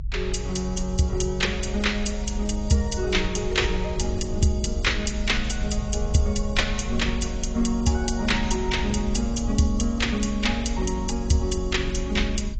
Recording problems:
lossy compression; AAC, log-spectral distance 3 dB, nothing above 7.6 kHz
low-frequency rumble; below 64 Hz, SNR 6 dB
crackle; from 1.5 to 4.5 s; loose cable, SNR 26 dB

